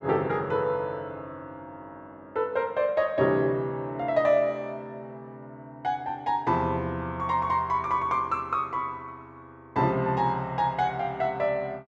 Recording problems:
none

